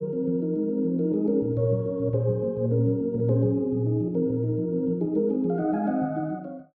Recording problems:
none

